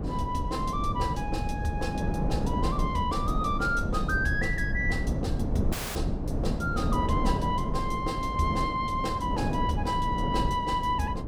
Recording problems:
electrical hum; 50 Hz, harmonics up to 500 Hz, SNR 20 dB
low-frequency rumble; below 100 Hz, SNR 7 dB
wind noise; below 300 Hz, SNR 2 dB
dropout; at 5.5 s

